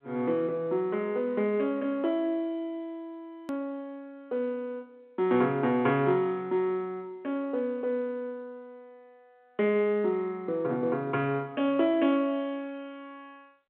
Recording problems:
telephone audio; 220 Hz to 3.7 kHz, G.711
click at an edit; at 3.5 s

